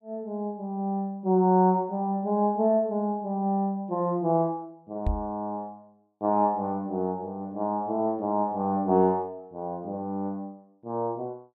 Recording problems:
microphone thump; at 5 s; peak +3 dB vs average level

